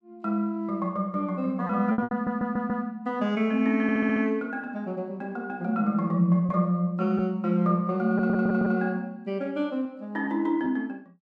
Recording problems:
lost packets; 3% of the sound replaced, filled with repeated pitch periods
audio stuttering; at 2 s, at 4 s and at 8 s

